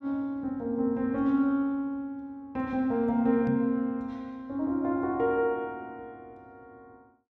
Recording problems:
microphone thump; at 3.5 s; peak -1 dB vs average level

